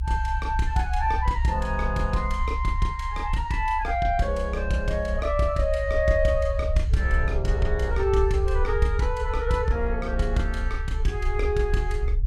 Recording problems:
low-frequency rumble; below 64 Hz, SNR 3 dB

